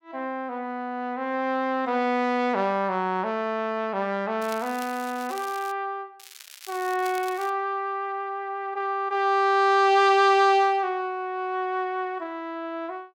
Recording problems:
crackling; from 4.5 to 5.5 s and from 6 to 7.5 s; loose cable, SNR 18 dB

